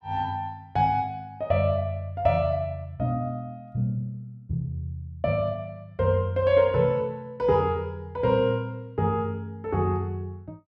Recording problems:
none

